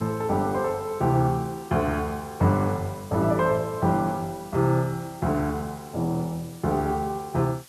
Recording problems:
background hiss; slope +1 dB per octave, SNR 22 dB

